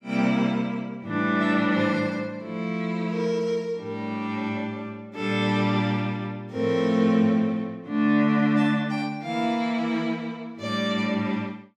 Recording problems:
none

